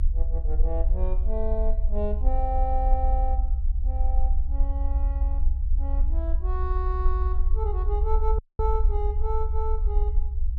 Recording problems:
rumble; below 64 Hz, SNR -7 dB
dropout; at 8.5 s

